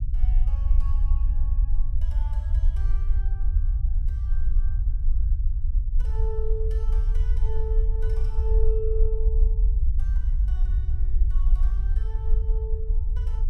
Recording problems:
low-frequency rumble; below 54 Hz, SNR -13 dB

